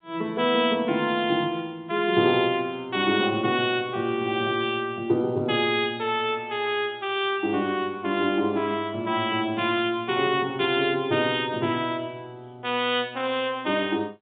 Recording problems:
phone line; 150 Hz to 3.7 kHz, G.711

